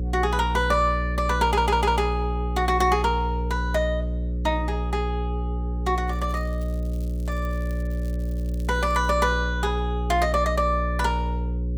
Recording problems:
electrical hum; 60 Hz, harmonics up to 540 Hz, SNR 3 dB
audio stuttering; at 1.5 s
crackling; from 6 to 9 s; loose cable, SNR 27 dB

